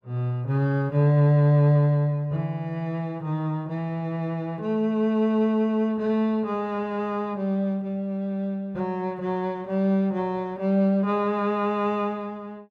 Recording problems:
none

